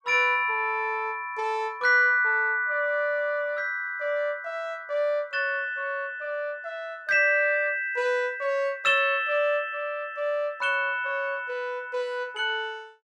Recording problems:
none

